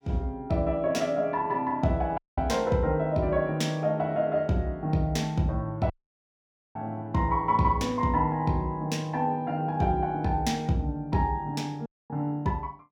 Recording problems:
audio cutting out; at 2 s, at 6 s for 1 s and at 12 s

